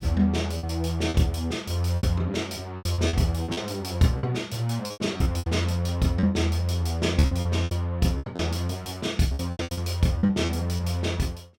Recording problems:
packet loss; 13% of the sound replaced, filled with repeated pitch periods

